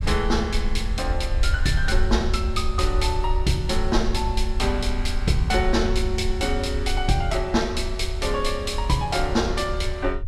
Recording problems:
low-frequency rumble; below 64 Hz, SNR 3 dB

